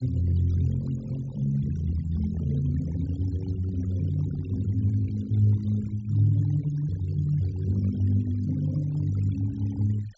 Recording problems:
treble cut off; nothing above 8 kHz
denoising artefacts; signal-to-artefact ratio 23 dB

